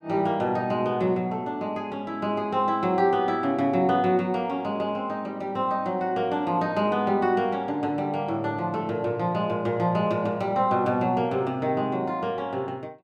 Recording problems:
none

